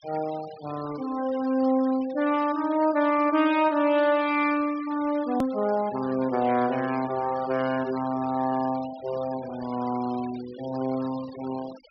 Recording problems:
treble missing; nothing above 5.5 kHz
denoising artefacts; signal-to-artefact ratio 19 dB
hard cut with a click; at 5.5 s

